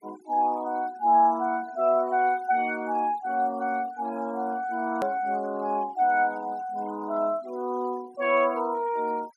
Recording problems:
denoising artefacts; signal-to-artefact ratio 24 dB
edit click; at 5 s

